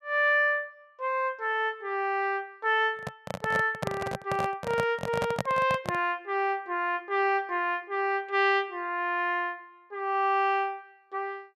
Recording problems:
handling noise; from 3 to 6 s; peak +1 dB vs average level

